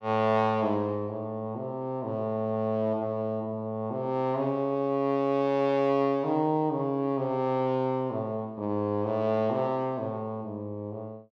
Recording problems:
none

